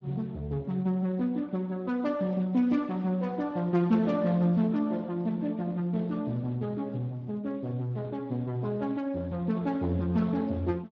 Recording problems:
lossy codec; Speex, log-spectral distance 2 dB

